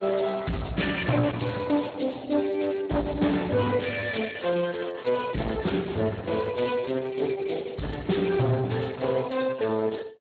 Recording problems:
lossy compression; Opus, then Speex, log-spectral distance 8 dB
distorted audio; soft clipping, signal-to-distortion ratio 10 dB

